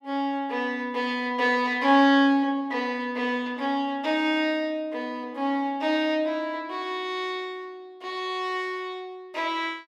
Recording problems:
none

